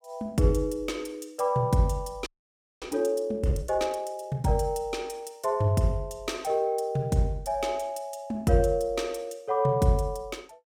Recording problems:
audio freezing; at 2.5 s for 0.5 s

